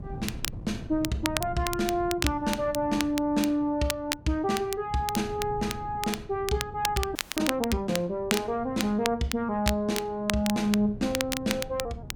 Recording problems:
wind on the microphone; below 180 Hz, SNR 15 dB
crackling; vinyl, SNR 6 dB
frozen audio; at 7 s

